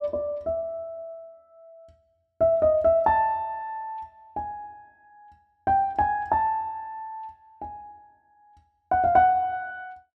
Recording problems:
none

